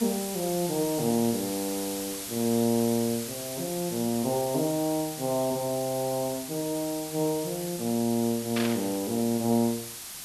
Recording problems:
background hiss; slope +1 dB per octave, SNR 7 dB
burst of static; at 8.5 s; peak 0 dB vs average level

